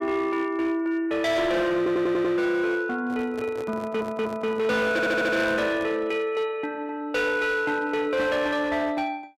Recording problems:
distorted audio; hard clipping, signal-to-distortion ratio 11 dB
stutter; at 2 s, at 4 s and at 5 s
microphone handling noise; from 3 to 6 s; peak -8 dB vs average level

